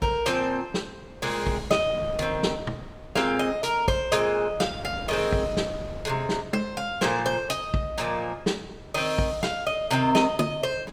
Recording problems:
wind noise; below 470 Hz, SNR 17 dB

